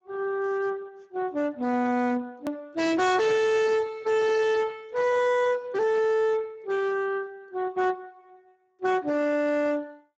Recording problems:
lossy codec; Speex, log-spectral distance 3 dB, nothing above 17.1 kHz
distorted audio; hard clipping, signal-to-distortion ratio 6 dB
hard cut with a click; at 2.5 s

